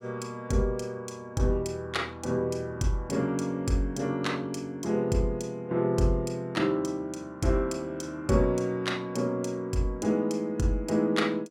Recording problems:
none

